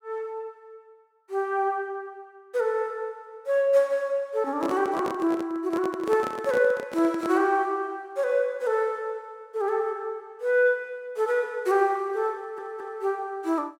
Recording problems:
handling noise; from 4.5 to 7.5 s; peak -4 dB vs average level
stutter; at 12 s

